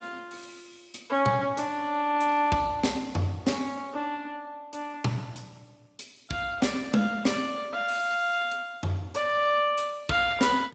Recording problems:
lossy compression; Speex, log-spectral distance 5 dB, nothing above 7.8 kHz

